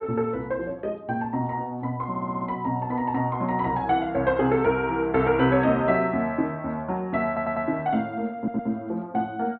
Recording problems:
low-pass filter; nothing above 4.4 kHz
stutter; at 2 s, at 7.5 s and at 8.5 s

